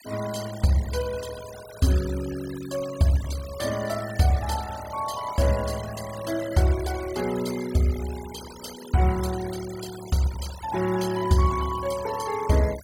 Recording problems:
noise reduction artefacts; signal-to-artefact ratio 15 dB

